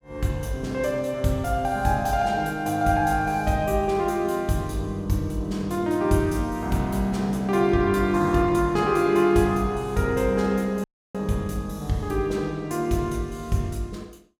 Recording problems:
audio cutting out; at 11 s

